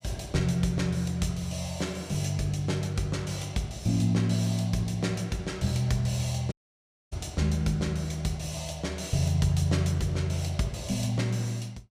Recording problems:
dropout; at 6.5 s for 0.5 s

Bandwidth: 15 kHz